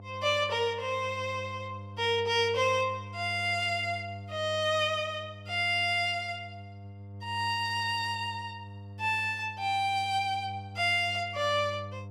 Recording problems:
electrical hum; 50 Hz, harmonics up to 900 Hz, SNR 15 dB

